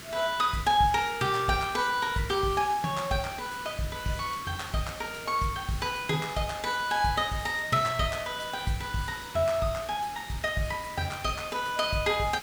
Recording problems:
hiss; SNR 13 dB

